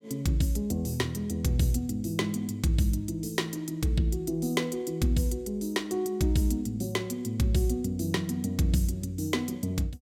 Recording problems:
none

